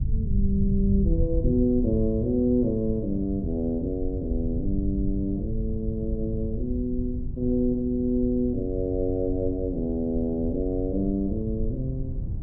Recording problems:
low-frequency rumble; below 94 Hz, SNR 5 dB
wind on the microphone; below 200 Hz, SNR 17 dB

